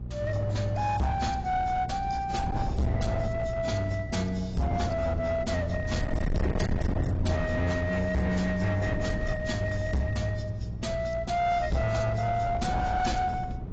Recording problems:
lossy codec; AAC, log-spectral distance 2 dB, nothing above 7.6 kHz
distorted audio; hard clipping, signal-to-distortion ratio 6 dB
hum; 60 Hz, harmonics up to 420 Hz, SNR 11 dB
wind on the microphone; below 200 Hz, SNR 7 dB

